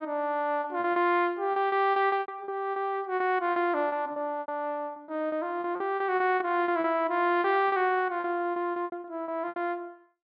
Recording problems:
low-pass filter; nothing above 5.5 kHz
lost packets; 15% of the sound replaced, filled with repeated pitch periods

